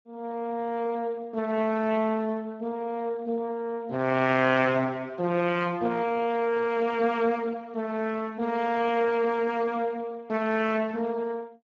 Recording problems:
codec artefacts; Speex, log-spectral distance 3 dB

